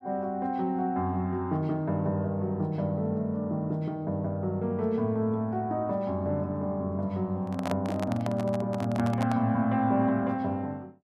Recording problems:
handling noise; from 7.5 to 9.5 s; peak 0 dB vs average level

